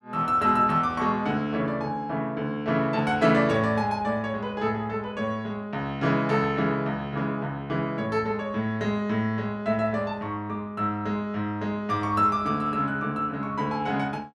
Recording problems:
none

